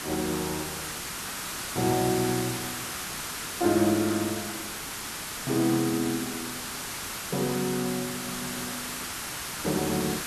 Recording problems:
hiss; SNR 4 dB
stutter; at 8 s

